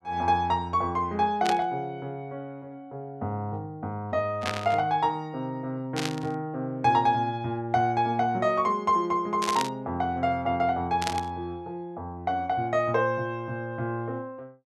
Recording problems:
burst of static; 5 times, first at 1.5 s; peak +1 dB vs average level

